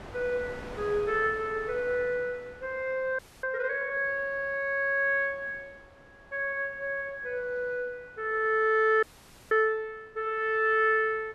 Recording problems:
wind on the microphone; below 1.3 kHz, SNR 21 dB
audio freezing; at 3 s and at 9 s

